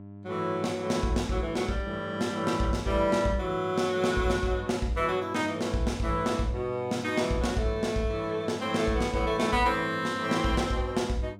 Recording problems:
electrical hum; 50 Hz, harmonics up to 1 kHz, SNR 17 dB

